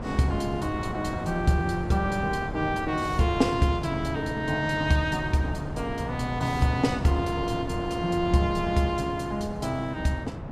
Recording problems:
wind noise; below 440 Hz, SNR 8 dB

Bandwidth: 14.5 kHz